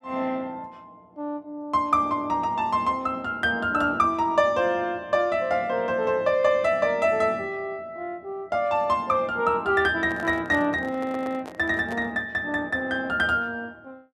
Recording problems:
handling noise; from 10 to 12 s; peak -9 dB vs average level
audio stuttering; at 11 s

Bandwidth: 14 kHz